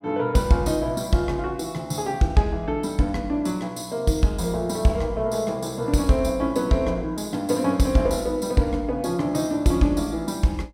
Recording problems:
none

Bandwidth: 16 kHz